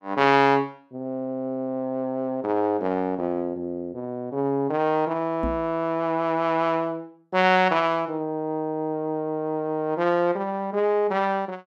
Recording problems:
knock on the microphone; at 5.5 s; peak -2 dB vs average level

